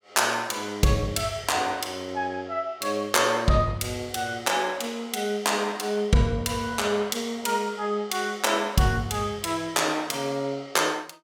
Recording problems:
none

